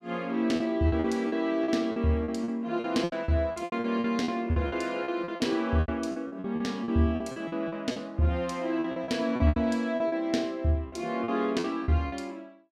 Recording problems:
packet loss; 15% of the sound replaced, filled with repeated pitch periods

